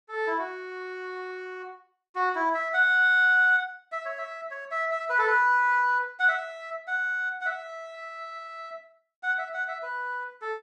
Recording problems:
none

